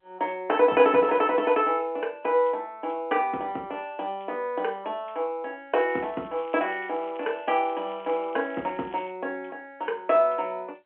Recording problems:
phone line; 220 Hz to 3.3 kHz, G.711
crackling; at 1 s and from 6 to 9 s; loose cable, SNR 26 dB

